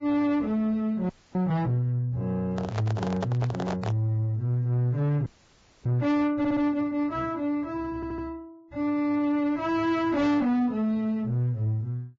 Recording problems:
lossy codec; Vorbis, log-spectral distance 2 dB, nothing above 16 kHz
distorted audio; soft clipping, signal-to-distortion ratio 10 dB
frozen audio; at 1 s and at 5.5 s for 0.5 s
handling noise; from 2.5 to 4 s; peak 0 dB vs average level
stutter; at 6.5 s and at 8 s

